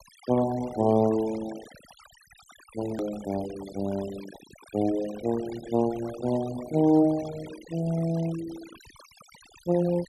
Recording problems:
denoising artefacts; signal-to-artefact ratio 18 dB
edit click; at 3 s

